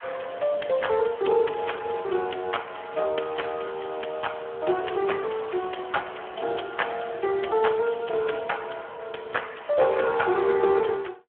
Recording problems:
telephone audio; 320 Hz to 3.3 kHz, Speex

